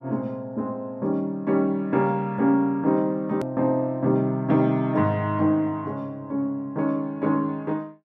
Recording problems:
click at an edit; at 3.5 s

